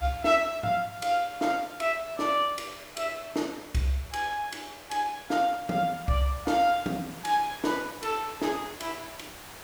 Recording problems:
background hiss; slope -3 dB per octave, SNR 17 dB

